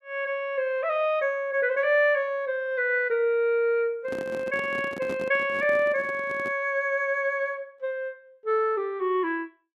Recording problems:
microphone handling noise; from 4 to 6.5 s; peak -7 dB vs average level

